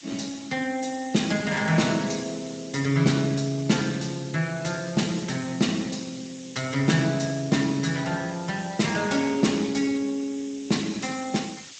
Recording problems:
codec artefacts; Speex, log-spectral distance 11 dB, nothing above 7.8 kHz
background hiss; slope +4 dB per octave, SNR 18 dB

